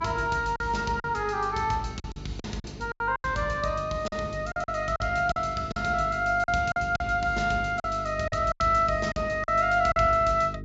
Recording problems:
treble missing; nothing above 7.5 kHz
hum; 50 Hz, harmonics up to 450 Hz, SNR 14 dB
lost packets; 10% of the sound replaced, filled with silence

